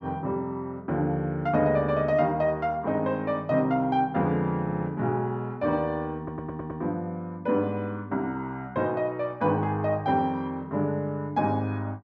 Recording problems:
audio stuttering; at 4.5 s and at 6 s

